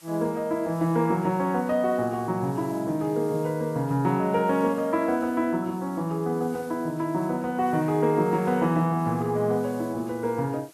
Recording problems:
background hiss; slope +1 dB per octave, SNR 25 dB

